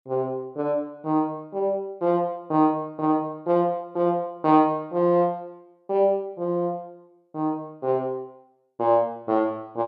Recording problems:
none

